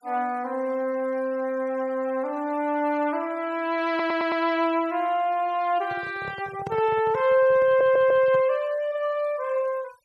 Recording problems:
noise reduction artefacts; signal-to-artefact ratio 25 dB
stutter; at 4 s and at 7.5 s
microphone handling noise; from 6 to 8.5 s; peak -6 dB vs average level

